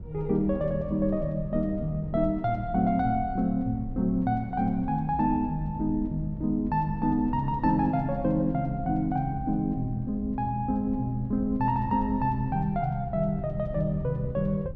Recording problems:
wind on the microphone; below 110 Hz, SNR 12 dB

